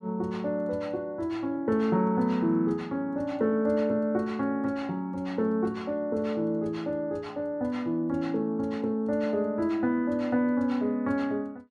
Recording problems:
none

